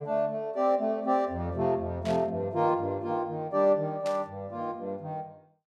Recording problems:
burst of static; at 2 s and at 4 s; peak -9 dB vs average level

